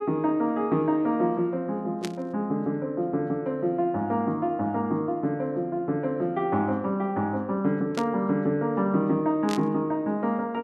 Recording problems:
burst of static; at 2 s, at 8 s and at 9.5 s; peak -4 dB vs average level

